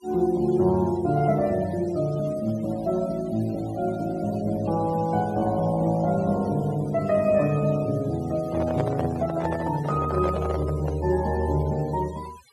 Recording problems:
noise reduction artefacts; signal-to-artefact ratio 21 dB
handling noise; from 8.5 to 11 s; peak -2 dB vs average level

